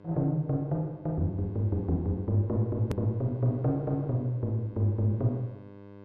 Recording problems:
hum; 50 Hz, harmonics up to 2.1 kHz, SNR 21 dB
edit click; at 3 s

